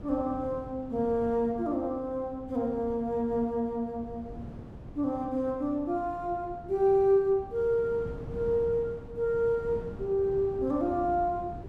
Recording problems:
wind noise; below 280 Hz, SNR 15 dB

